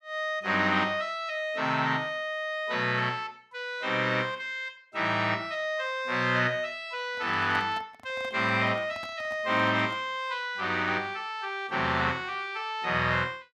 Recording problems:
microphone handling noise; from 7 to 10 s; peak -9 dB vs average level

